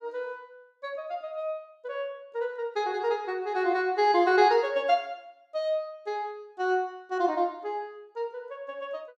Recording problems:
none

